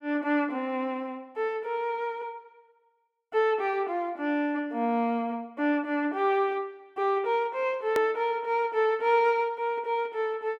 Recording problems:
edit click; at 8 s

